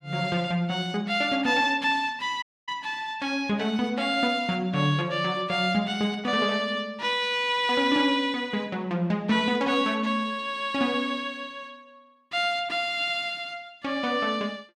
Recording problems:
audio cutting out; at 2.5 s

